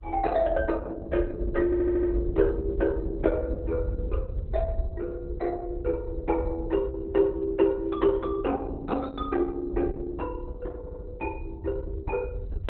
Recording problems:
lossy compression; Opus, log-spectral distance 2 dB, nothing above 4 kHz
rumble; below 68 Hz, SNR 6 dB
stutter; at 1.5 s and at 11 s

